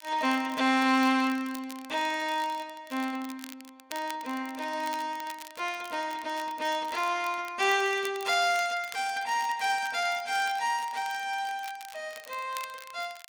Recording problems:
crackle; vinyl, SNR 18 dB

